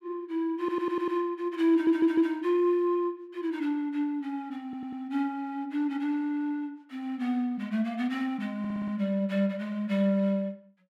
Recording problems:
audio stuttering; 4 times, first at 0.5 s

